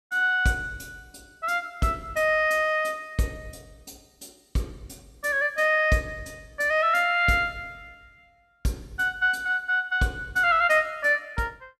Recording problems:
none

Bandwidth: 14.5 kHz